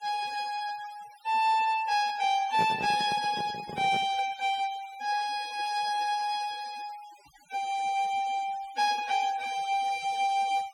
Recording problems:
noise reduction artefacts; signal-to-artefact ratio 19 dB
microphone handling noise; from 2.5 to 4 s; peak -3 dB vs average level

